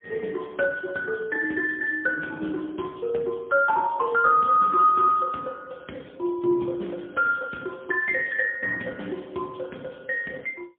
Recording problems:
telephone audio; 170 Hz to 3.4 kHz, AMR-NB, then MP3

